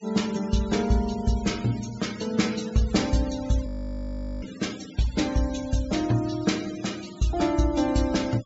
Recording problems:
treble missing; nothing above 8 kHz
denoising artefacts; signal-to-artefact ratio 16 dB
audio freezing; at 3.5 s for 1 s

